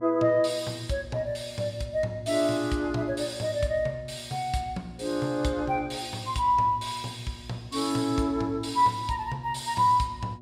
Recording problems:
electrical hum; 60 Hz, harmonics up to 960 Hz, SNR 21 dB

